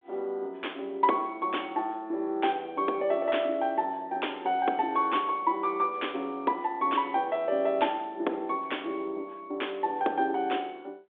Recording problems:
phone line; 260 Hz to 3.6 kHz, G.726

